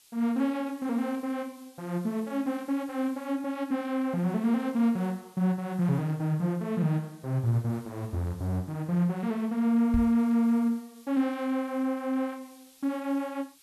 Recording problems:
background hiss; SNR 27 dB
microphone thump; at 10 s; peak +2 dB vs average level

